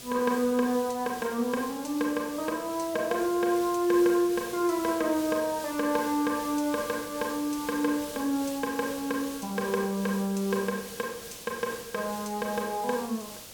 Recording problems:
hiss; SNR 12 dB

